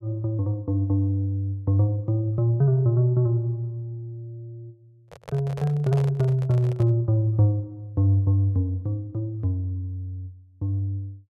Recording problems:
handling noise; from 5 to 7 s; peak -8 dB vs average level

